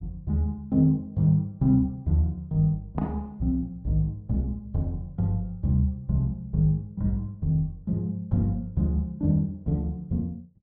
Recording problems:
none

